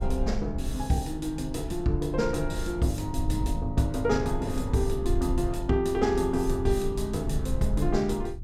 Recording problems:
low-frequency rumble; below 76 Hz, SNR 6 dB

